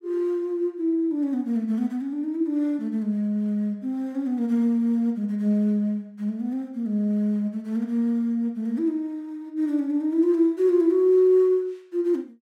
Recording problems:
none

